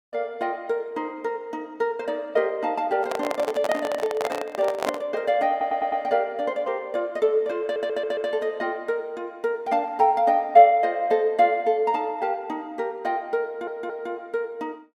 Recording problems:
handling noise; from 3 to 5 s; peak +3 dB vs average level
stutter; at 5.5 s, at 7.5 s and at 13 s

